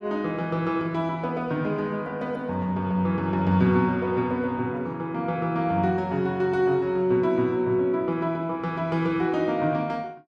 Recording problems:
none

